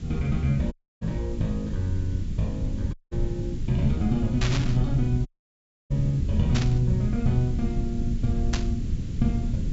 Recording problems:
low-pass filter; nothing above 8 kHz
hiss; SNR 25 dB
low-frequency rumble; below 110 Hz, SNR 3 dB
audio cutting out; at 0.5 s, at 3 s and at 5.5 s for 0.5 s
static burst; at 4.5 s, at 6.5 s and at 8.5 s; peak +1 dB vs average level

